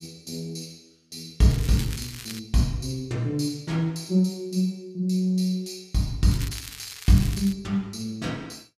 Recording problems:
crackling; at 1.5 s and from 6.5 to 7.5 s; loose cable, SNR 13 dB

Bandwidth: 14.5 kHz